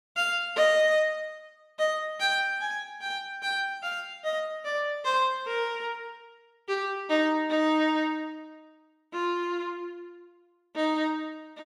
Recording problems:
none

